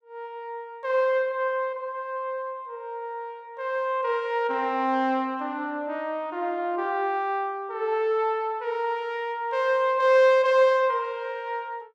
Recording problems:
none

